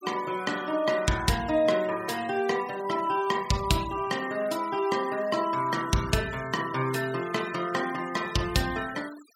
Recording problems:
denoising artefacts; signal-to-artefact ratio 17 dB

